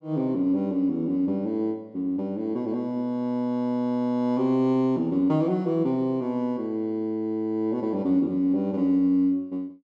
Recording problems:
none

